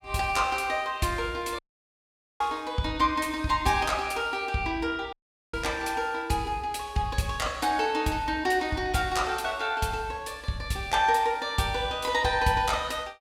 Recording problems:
dropout; at 1.5 s for 1 s and at 5 s

